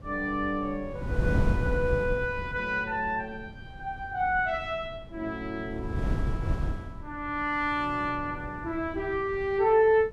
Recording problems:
wind on the microphone; below 170 Hz, SNR 5 dB

